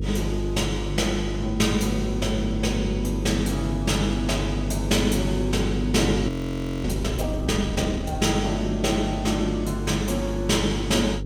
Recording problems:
hum; 50 Hz, harmonics up to 500 Hz, SNR 5 dB
frozen audio; at 6.5 s for 0.5 s

